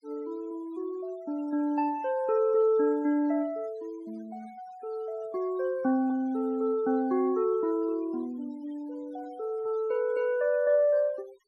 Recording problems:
denoising artefacts; signal-to-artefact ratio 26 dB

